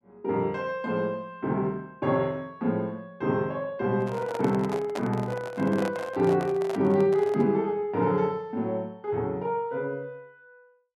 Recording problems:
microphone handling noise; from 4 to 7.5 s; peak -3 dB vs average level

